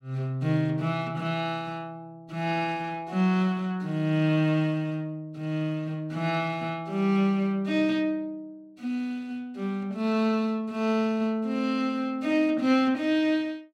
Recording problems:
none

